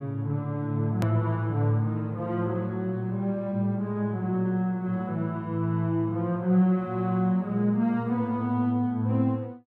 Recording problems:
hard cut with a click; at 1 s

